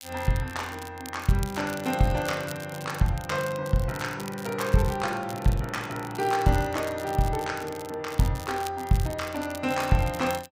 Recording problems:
crackle; vinyl, SNR 16 dB

